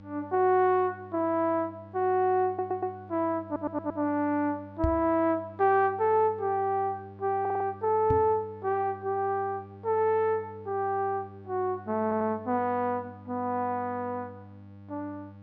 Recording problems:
electrical hum; 50 Hz, harmonics up to 1.1 kHz, SNR 20 dB
audio stuttering; 4 times, first at 2.5 s
knock on the microphone; at 5 s and at 8 s; peak +3 dB vs average level

